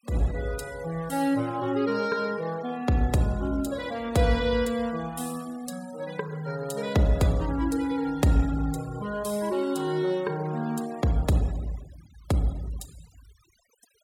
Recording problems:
denoising artefacts; signal-to-artefact ratio 21 dB

